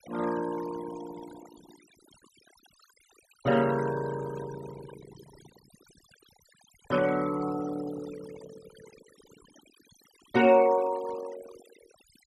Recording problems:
noise reduction artefacts; signal-to-artefact ratio 17 dB

